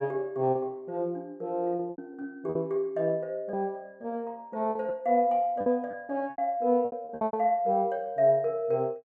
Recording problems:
packet loss; 8% of the sound replaced, filled with repeated pitch periods

